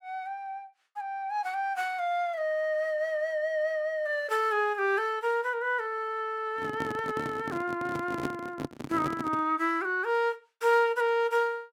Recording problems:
handling noise; from 6.5 to 9.5 s; peak 0 dB vs average level

